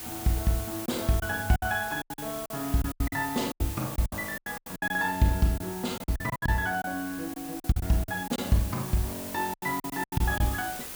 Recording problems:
hiss; slope 0 dB per octave, SNR 9 dB
wind noise; below 780 Hz, SNR 24 dB
lost packets; 14% of the sound replaced, filled with silence

